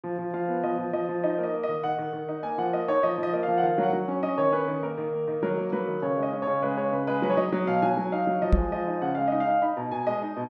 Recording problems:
microphone thump; at 8.5 s; peak +8 dB vs average level

